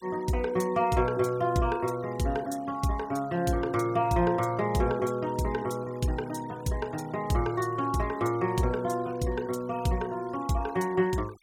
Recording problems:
noise reduction artefacts; signal-to-artefact ratio 22 dB

